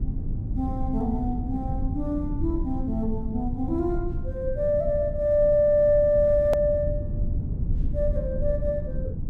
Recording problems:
rumble; below 110 Hz, SNR 6 dB
edit click; at 6.5 s

